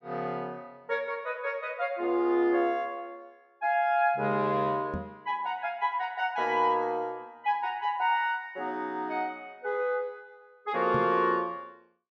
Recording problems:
knock on the microphone; at 5 s and at 11 s; peak -1 dB vs average level

